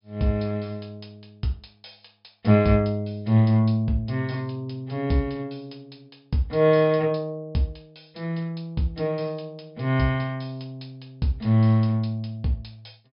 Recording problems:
treble missing; nothing above 5.5 kHz

